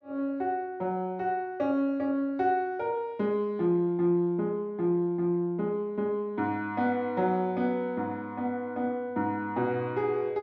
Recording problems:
none

